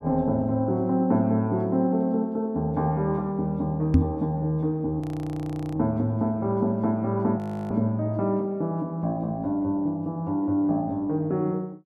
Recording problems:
knock on the microphone; at 4 s; peak +10 dB vs average level
audio freezing; at 5 s for 1 s and at 7.5 s

